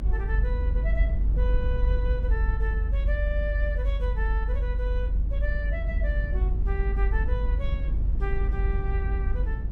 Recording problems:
rumble; below 56 Hz, strongest tone 48 Hz, SNR -9 dB

